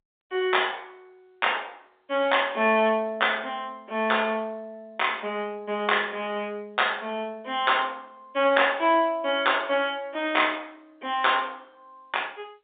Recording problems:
phone line; 190 Hz to 3.7 kHz, G.711

